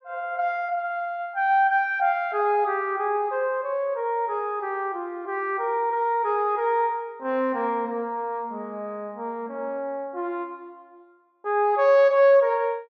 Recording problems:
none

